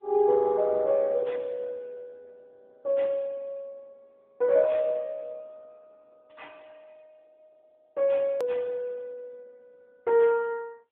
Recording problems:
telephone audio; 150 Hz to 2.8 kHz, AMR-NB
hard cut with a click; at 8.5 s

